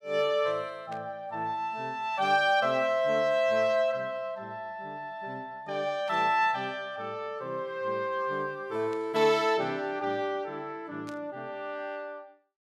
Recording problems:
burst of static; 4 times, first at 1 s; peak -14 dB vs average level

